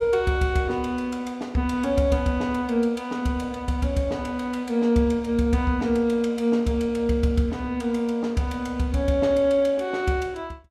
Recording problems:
none

